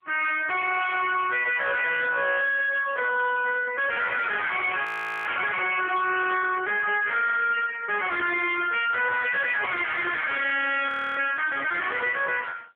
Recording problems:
telephone audio; 320 Hz to 2.6 kHz, AMR-NB
distorted audio; soft clipping, signal-to-distortion ratio 5 dB
audio freezing; at 5 s and at 11 s

